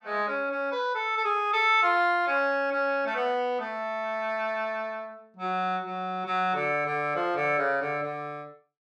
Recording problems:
none

